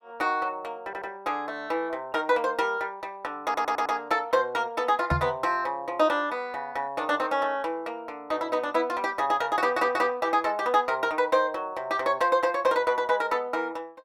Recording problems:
audio stuttering; at 1 s, at 3.5 s and at 9.5 s
knock on the microphone; at 5 s; peak +3 dB vs average level

